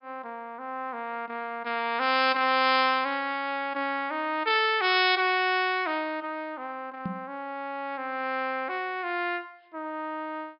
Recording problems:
treble missing; nothing above 5.5 kHz
microphone bump; at 7 s; peak -2 dB vs average level

